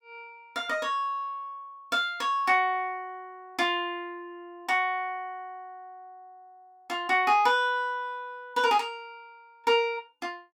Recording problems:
none

